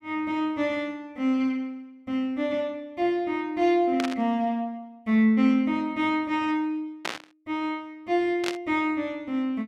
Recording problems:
burst of static; at 4 s, at 7 s and at 8.5 s; peak 0 dB vs average level

